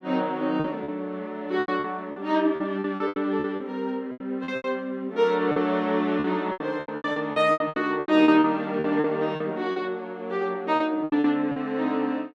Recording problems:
lost packets; 15% of the sound replaced, filled with repeated pitch periods

